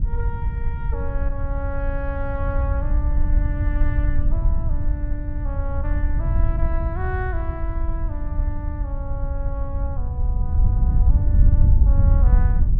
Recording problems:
wind noise; below 76 Hz, SNR -11 dB

